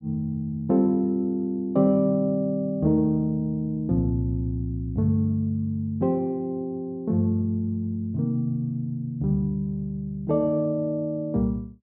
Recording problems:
none

